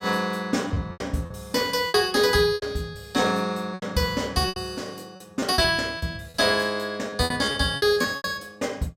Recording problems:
lost packets; 12% of the sound replaced, filled with repeated pitch periods

